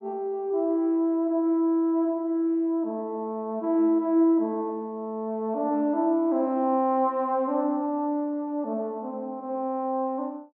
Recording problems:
none

